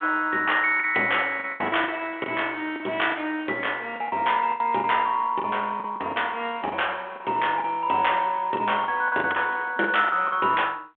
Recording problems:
telephone audio; 300 Hz to 3.5 kHz, G.726
lost packets; 11% of the sound replaced, filled with the last packet

